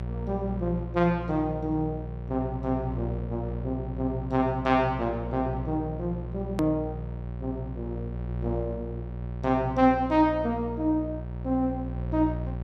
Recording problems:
hum; 60 Hz, harmonics up to 780 Hz, SNR 7 dB
hard cut with a click; at 6.5 s

